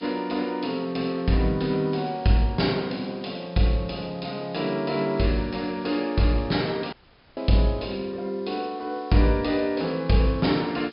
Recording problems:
treble missing; nothing above 5.5 kHz
background hiss; slope +2 dB per octave, SNR 27 dB
audio cutting out; at 7 s

